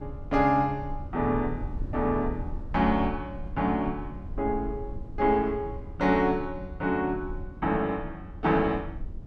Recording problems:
rumble; below 90 Hz, SNR 12 dB

